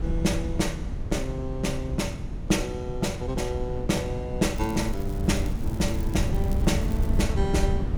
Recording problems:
electrical hum; 60 Hz, harmonics up to 1.3 kHz, SNR 23 dB
wind noise; below 120 Hz, SNR 2 dB
crackle; from 4.5 to 7 s; loose cable, SNR 20 dB

